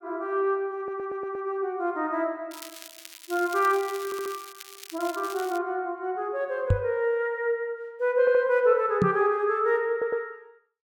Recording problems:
audio stuttering; 4 times, first at 1 s
crackle; from 2.5 to 5.5 s; loose cable, SNR 16 dB
microphone bump; at 6.5 s and at 9 s; peak +7 dB vs average level

